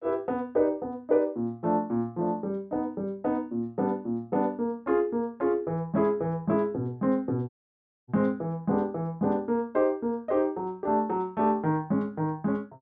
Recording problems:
dropout; at 7.5 s for 0.5 s

